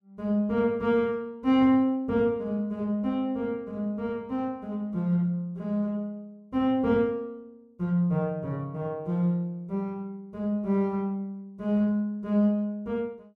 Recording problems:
none

